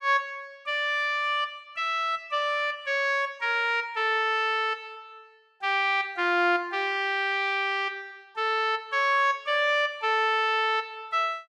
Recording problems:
none

